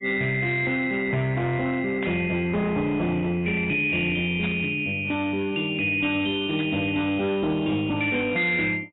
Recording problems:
lossy compression; AAC, log-spectral distance 3 dB
distortion; soft clipping, signal-to-distortion ratio 11 dB
burst of static; at 2 s, at 4.5 s and at 6.5 s; peak -7 dB vs average level

